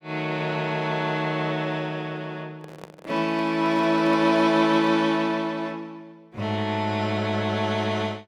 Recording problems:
microphone handling noise; from 2.5 to 5 s; peak -11 dB vs average level

